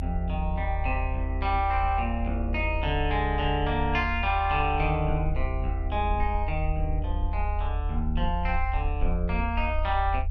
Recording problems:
low-frequency rumble; below 78 Hz, strongest tone 44 Hz, SNR 2 dB

